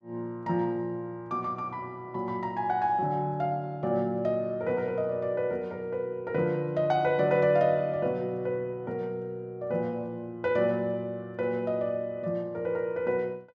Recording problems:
none

